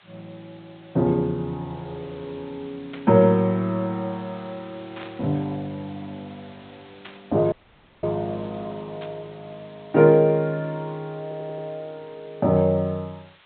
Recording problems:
low-pass filter; nothing above 4 kHz
hiss; SNR 27 dB
burst of static; 4 times, first at 3 s; peak -12 dB vs average level
audio cutting out; at 7.5 s for 0.5 s
audio stuttering; at 11 s

